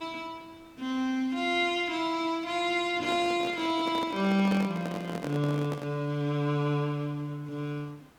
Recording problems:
background hiss; slope -5 dB per octave, SNR 28 dB
microphone handling noise; from 3 to 6 s; peak -2 dB vs average level

